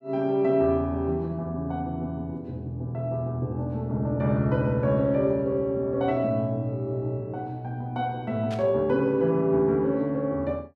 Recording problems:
burst of static; at 8.5 s; peak -11 dB vs average level

